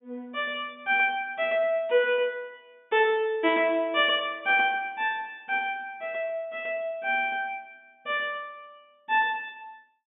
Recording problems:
low-pass filter; nothing above 3.6 kHz

